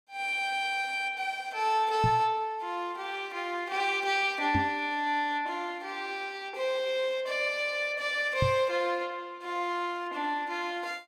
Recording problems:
microphone thump; at 2 s, at 4.5 s and at 8.5 s; peak +4 dB vs average level

